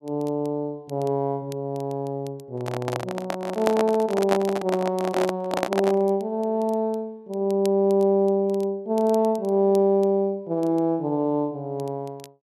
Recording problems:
crackling; vinyl, SNR 26 dB
microphone handling noise; from 2.5 to 6 s; peak +3 dB vs average level

